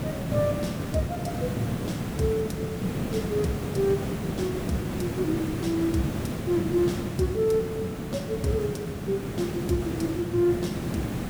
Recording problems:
background hiss; slope -7 dB per octave, SNR 2 dB

